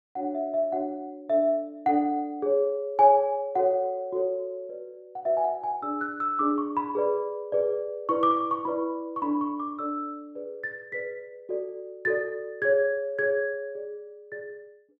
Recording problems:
none

